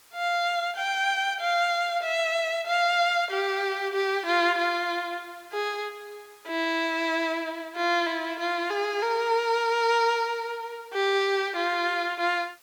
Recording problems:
hiss; slope 0 dB per octave, SNR 28 dB

